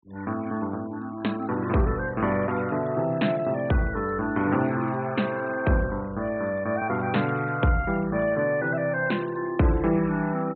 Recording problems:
low-pass filter; nothing above 4 kHz
denoising artefacts; signal-to-artefact ratio 23 dB

